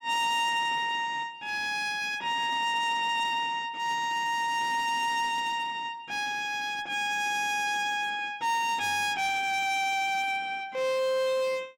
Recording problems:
distorted audio; hard clipping, uneven, signal-to-distortion ratio 11 dB

